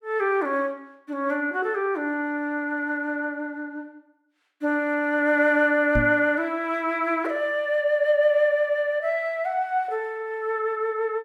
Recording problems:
microphone bump; at 6 s; peak +2 dB vs average level

